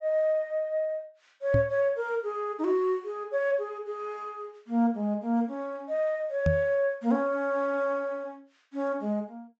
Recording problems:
low-pass filter; nothing above 8 kHz
microphone thump; at 1.5 s and at 6.5 s; peak +6 dB vs average level

